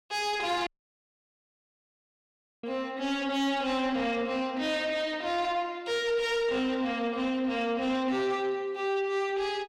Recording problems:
distortion; soft clipping, signal-to-distortion ratio 11 dB
dropout; at 0.5 s for 2 s

